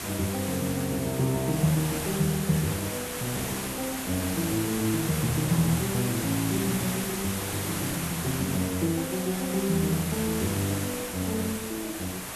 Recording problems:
background hiss; slope -3 dB per octave, SNR 4 dB

